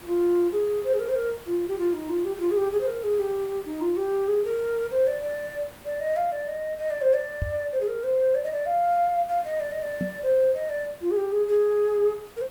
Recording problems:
background hiss; slope -4 dB per octave, SNR 21 dB
microphone bump; at 7.5 s and at 10 s; peak 0 dB vs average level

